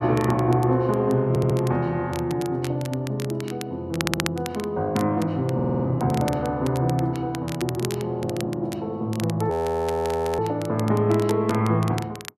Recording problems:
crackle; vinyl, SNR 14 dB
audio stuttering; at 1.5 s, at 4 s and at 5.5 s
frozen audio; at 9.5 s for 1 s

